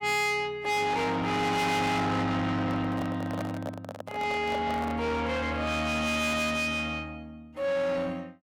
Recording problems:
distorted audio; soft clipping, signal-to-distortion ratio 6 dB
handling noise; from 2.5 to 5 s; peak -1 dB vs average level

